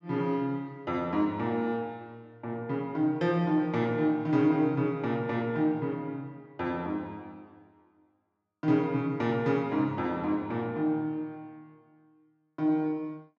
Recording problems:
none

